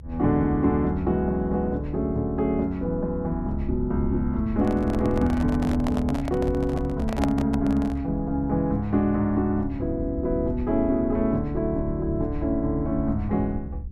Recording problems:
low-frequency rumble; below 72 Hz, SNR 9 dB
handling noise; from 4.5 to 8 s; peak +1 dB vs average level

